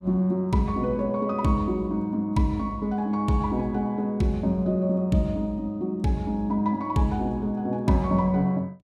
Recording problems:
none

